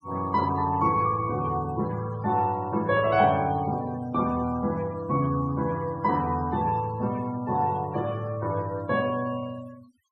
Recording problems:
denoising artefacts; signal-to-artefact ratio 21 dB

